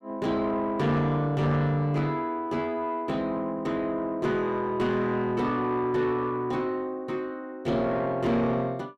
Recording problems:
distorted audio; soft clipping, signal-to-distortion ratio 10 dB

